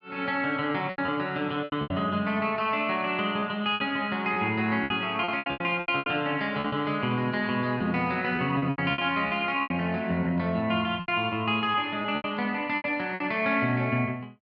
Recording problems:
packet loss; 11% of the sound replaced, filled with repeated pitch periods

